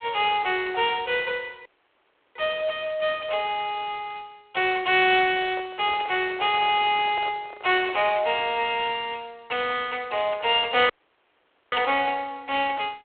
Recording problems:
telephone audio; 300 Hz to 3.5 kHz, G.726
audio cutting out; at 1.5 s for 0.5 s and at 11 s for 1 s
microphone handling noise; from 5.5 to 8 s; peak -10 dB vs average level

